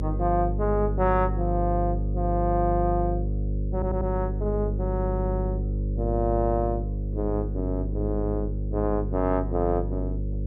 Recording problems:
electrical hum; 50 Hz, harmonics up to 550 Hz, SNR 1 dB
audio stuttering; at 3.5 s

